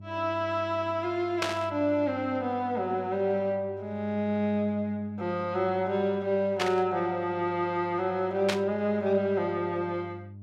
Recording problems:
hum; 50 Hz, harmonics up to 400 Hz, SNR 17 dB
burst of static; at 1.5 s, at 6.5 s and at 8.5 s; peak +3 dB vs average level

